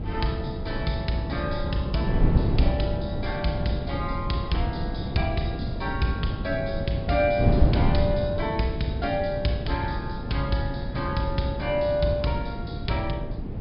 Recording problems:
low-pass filter; nothing above 5.5 kHz
wind noise; below 210 Hz, SNR 1 dB

